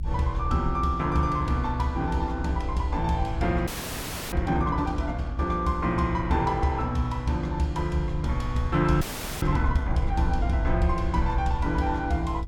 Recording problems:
low-frequency rumble; below 74 Hz, SNR 6 dB
audio freezing; at 3.5 s for 0.5 s and at 9 s

